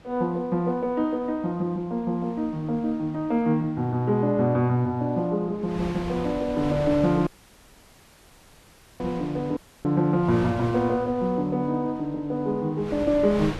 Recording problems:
wind on the microphone; below 1.3 kHz, SNR 16 dB
audio cutting out; at 7.5 s for 1.5 s and at 9.5 s

